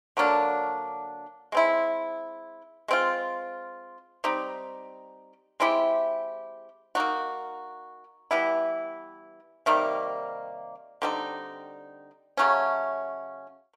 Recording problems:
none

